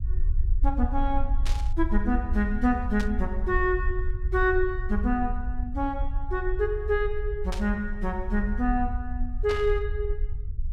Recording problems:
rumble; below 56 Hz, SNR 3 dB
static burst; 4 times, first at 1.5 s; peak -4 dB vs average level

